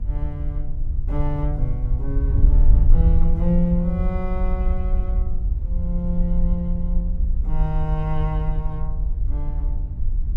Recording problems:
wind noise; below 58 Hz, SNR -4 dB

